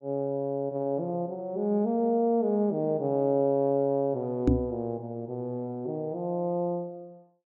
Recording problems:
microphone thump; at 4.5 s; peak +9 dB vs average level

